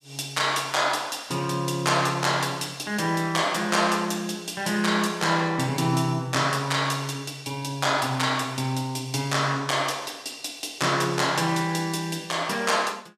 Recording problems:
none

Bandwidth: 14.5 kHz